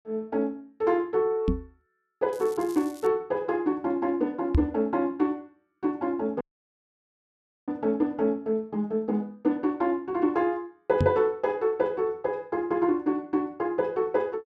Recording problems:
microphone thump; at 1.5 s, at 4.5 s and at 11 s; peak +7 dB vs average level
crackling; at 2.5 s; loose cable, SNR 22 dB
audio cutting out; at 6.5 s for 1.5 s

